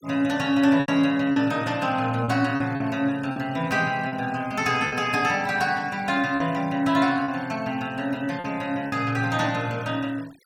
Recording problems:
noise reduction artefacts; signal-to-artefact ratio 23 dB
lost packets; 5% of the sound replaced, filled with repeated pitch periods

